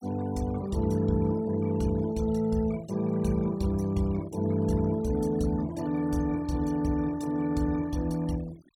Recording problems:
denoising artefacts; signal-to-artefact ratio 21 dB

